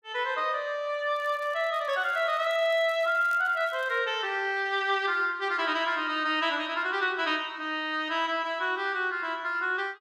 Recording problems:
crackle; from 1 to 4 s; loose cable, SNR 27 dB

